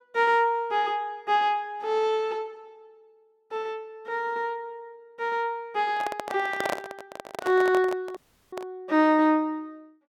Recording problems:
microphone handling noise; from 6 to 9 s; peak 0 dB vs average level
audio cutting out; at 8 s

